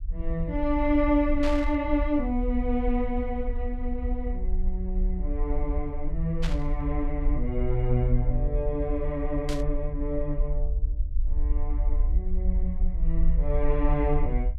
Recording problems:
rumble; below 50 Hz, SNR 1 dB
burst of static; at 1.5 s, at 6.5 s and at 9.5 s; peak -4 dB vs average level

